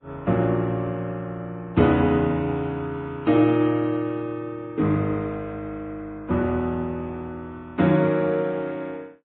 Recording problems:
low-pass filter; nothing above 4 kHz
lossy compression; Vorbis, log-spectral distance 2 dB

